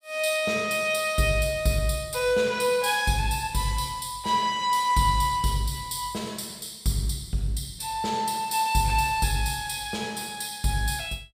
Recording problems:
none

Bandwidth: 15.5 kHz